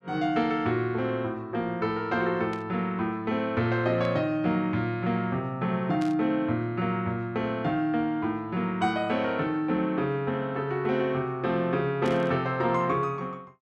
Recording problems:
static burst; 4 times, first at 2.5 s; peak -11 dB vs average level

